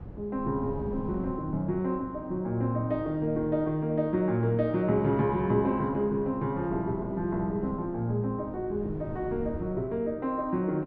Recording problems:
wind on the microphone; below 240 Hz, SNR 15 dB

